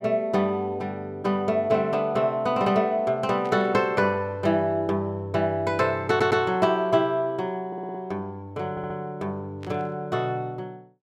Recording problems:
burst of static; at 3.5 s and at 9.5 s; peak -14 dB vs average level
stutter; at 6 s, at 7.5 s and at 8.5 s

